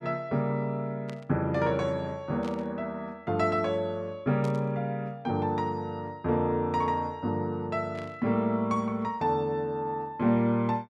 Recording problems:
burst of static; 4 times, first at 1 s; peak -13 dB vs average level

